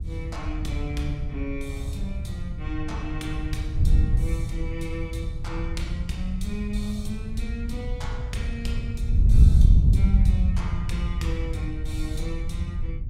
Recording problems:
wind on the microphone; below 88 Hz, SNR -8 dB

